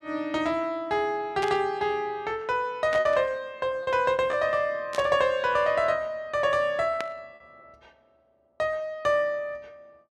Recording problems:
packet loss; 1.5% of the sound replaced, filled with repeated pitch periods
static burst; 4 times, first at 1.5 s; peak -4 dB vs average level

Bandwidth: 12.5 kHz